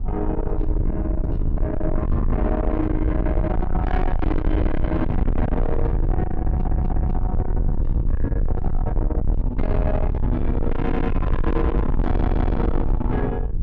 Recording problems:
distorted audio; soft clipping, signal-to-distortion ratio 6 dB
low-frequency rumble; below 100 Hz, SNR -1 dB
stutter; at 6.5 s, at 11 s and at 12 s

